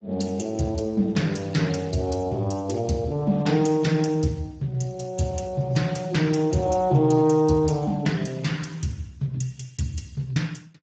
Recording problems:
lossy compression; Speex, log-spectral distance 3 dB, nothing above 7.3 kHz

